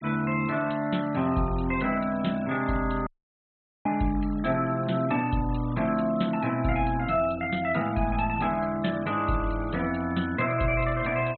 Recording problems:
treble cut off; nothing above 4.1 kHz
denoising artefacts; signal-to-artefact ratio 21 dB
audio cutting out; at 3 s for 1 s

